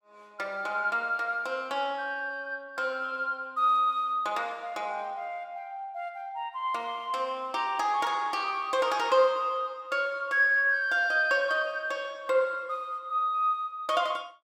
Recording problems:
none

